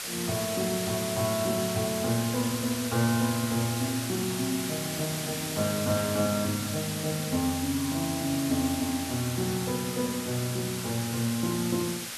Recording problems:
background hiss; SNR 4 dB

